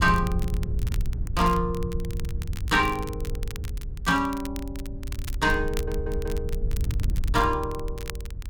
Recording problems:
wind on the microphone; below 84 Hz, SNR 5 dB
crackle; vinyl, SNR 17 dB
audio stuttering; at 5.5 s

